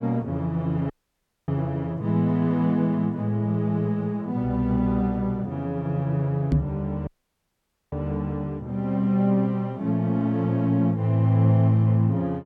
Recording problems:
audio cutting out; at 1 s for 0.5 s and at 7 s for 1 s
microphone bump; at 6.5 s; peak +7 dB vs average level

